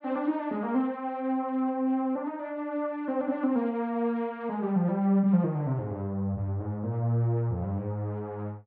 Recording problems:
none

